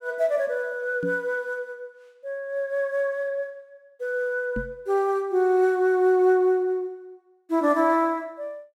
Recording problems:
microphone bump; at 1 s and at 4.5 s; peak -4 dB vs average level

